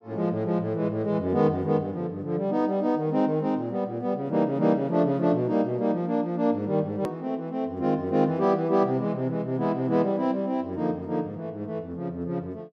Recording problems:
edit click; at 7 s

